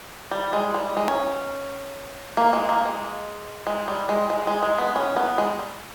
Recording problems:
hiss; SNR 15 dB
click at an edit; at 1 s

